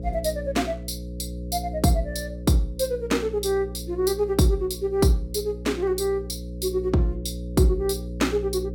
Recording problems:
hum; 60 Hz, harmonics up to 540 Hz, SNR 10 dB

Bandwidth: 17 kHz